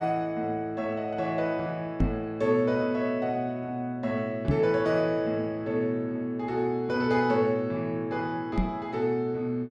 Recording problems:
microphone thump; at 2 s, at 4.5 s and at 8.5 s; peak +6 dB vs average level

